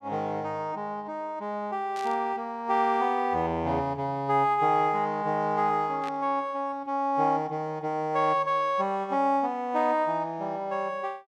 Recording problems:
static burst; at 2 s and at 6 s; peak -11 dB vs average level

